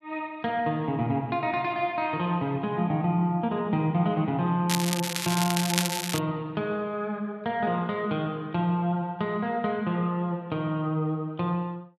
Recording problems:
crackle; from 4.5 to 6 s; loose cable, SNR 2 dB

